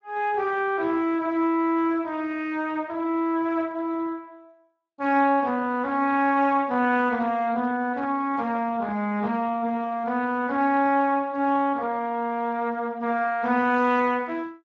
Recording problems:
codec artefacts; Speex, log-spectral distance 2 dB

